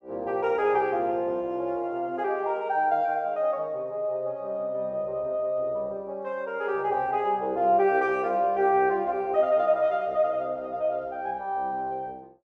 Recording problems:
none

